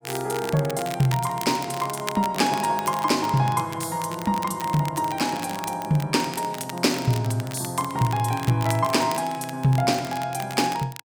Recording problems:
crackle; vinyl, SNR 14 dB

